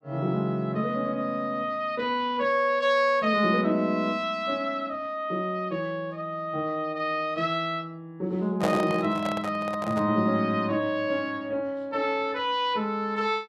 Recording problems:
microphone handling noise; from 8.5 to 10 s; peak +2 dB vs average level

